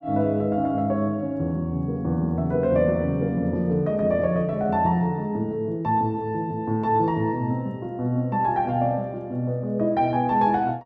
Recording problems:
none

